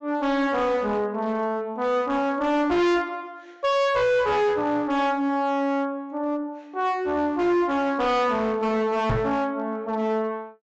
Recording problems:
low-pass filter; nothing above 8 kHz
distortion; hard clipping, uneven, signal-to-distortion ratio 5 dB
microphone thump; at 9 s; peak +3 dB vs average level

